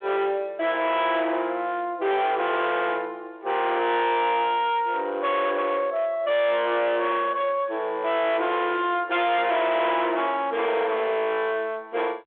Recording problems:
telephone audio; 280 Hz to 3.9 kHz, G.726
distorted audio; hard clipping, signal-to-distortion ratio 7 dB

